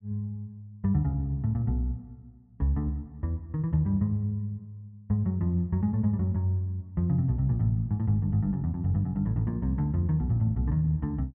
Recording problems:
none

